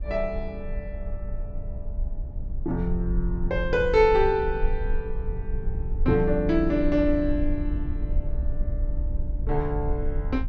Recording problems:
treble missing; nothing above 8 kHz
low-frequency rumble; below 58 Hz, strongest tone 22 Hz, SNR 6 dB

